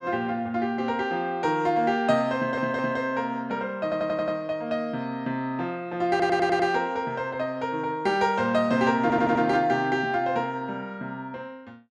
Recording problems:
audio stuttering; 4 times, first at 2.5 s

